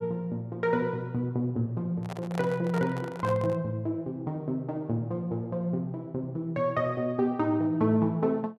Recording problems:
handling noise; from 2 to 3.5 s; peak -4 dB vs average level

